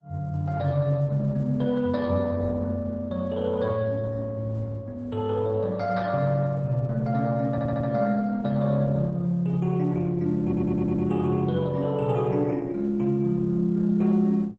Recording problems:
lossy compression; Opus, log-spectral distance 2 dB, nothing above 7.8 kHz
audio stuttering; at 7.5 s and at 10 s

